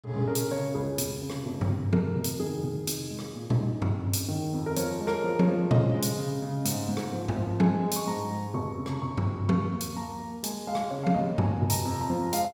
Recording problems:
none

